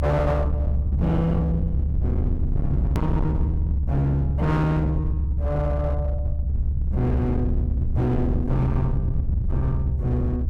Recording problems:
distorted audio; hard clipping, uneven, signal-to-distortion ratio 7 dB
rumble; below 100 Hz, strongest tone 70 Hz, SNR 0 dB
hard cut with a click; at 3 s

